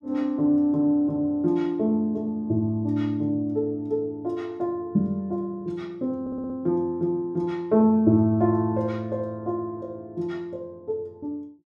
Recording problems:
stutter; at 6 s

